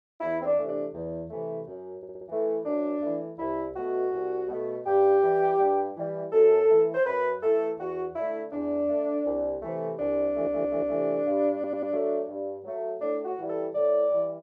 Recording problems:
audio stuttering; at 2 s, at 10 s and at 12 s

